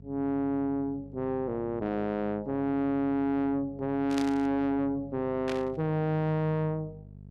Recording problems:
distorted audio; soft clipping, signal-to-distortion ratio 6 dB
electrical hum; 50 Hz, harmonics up to 450 Hz, SNR 19 dB
burst of static; at 4 s and at 5.5 s; peak -4 dB vs average level

